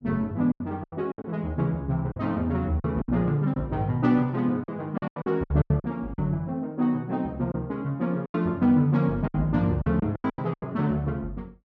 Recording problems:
lost packets; 11% of the sound replaced, filled with silence

